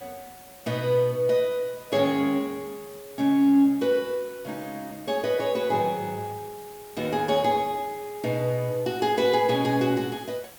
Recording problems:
background hiss; slope -3 dB per octave, SNR 21 dB

